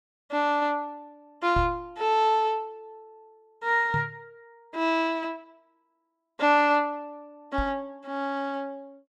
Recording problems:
microphone thump; at 1.5 s, at 4 s and at 7.5 s; peak -1 dB vs average level

